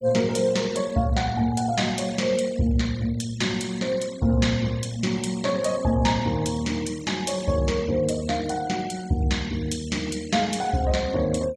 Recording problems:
noise reduction artefacts; signal-to-artefact ratio 19 dB

